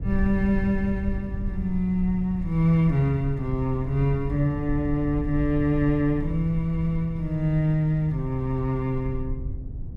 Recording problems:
low-frequency rumble; below 88 Hz, SNR 9 dB

